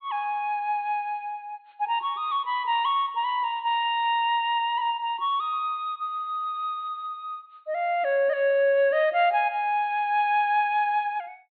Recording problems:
treble cut off; nothing above 4.3 kHz

